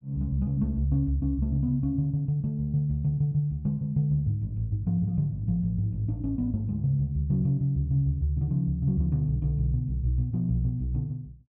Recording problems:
none

